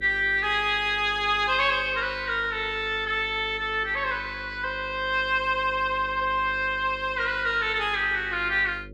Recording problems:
hum; 50 Hz, harmonics up to 550 Hz, SNR 20 dB

